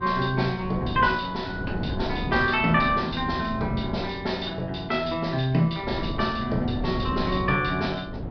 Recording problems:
treble missing; nothing above 5.5 kHz
wind on the microphone; below 300 Hz, SNR 9 dB

